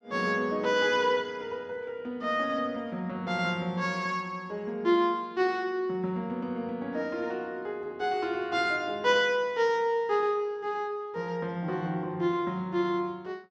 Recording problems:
none

